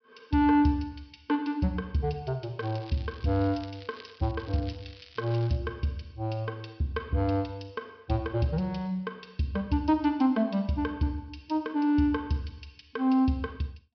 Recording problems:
treble cut off; nothing above 5.5 kHz
crackle; from 2.5 to 5.5 s; loose cable, SNR 22 dB

